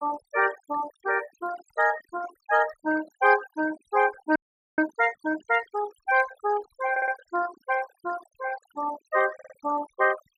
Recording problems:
denoising artefacts; signal-to-artefact ratio 15 dB
frozen audio; at 4.5 s
stutter; at 7 s and at 9.5 s

